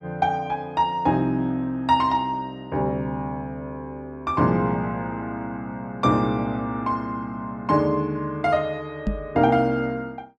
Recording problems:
knock on the microphone; at 9 s; peak +2 dB vs average level

